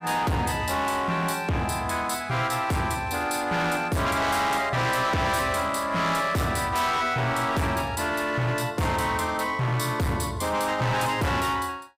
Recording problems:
distorted audio; hard clipping, signal-to-distortion ratio 7 dB

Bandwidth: 15.5 kHz